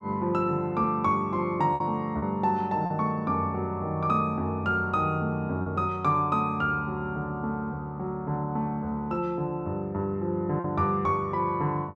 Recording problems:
lost packets; 2% of the sound replaced, filled with repeated pitch periods

